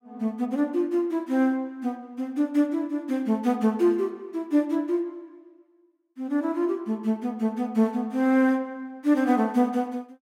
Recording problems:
none

